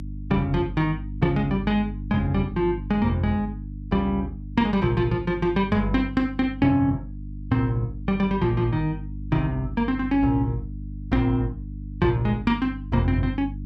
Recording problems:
electrical hum; 50 Hz, harmonics up to 300 Hz, SNR 11 dB

